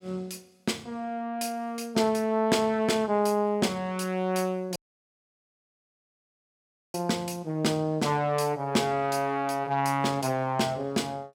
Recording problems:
audio cutting out; at 5 s for 2 s

